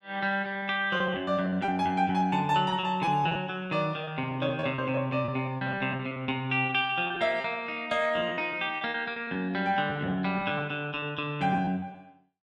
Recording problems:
packet loss; 13% of the sound replaced, filled with repeated pitch periods

